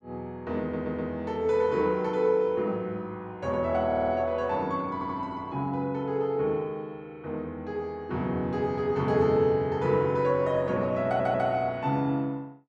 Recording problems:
audio stuttering; 4 times, first at 0.5 s

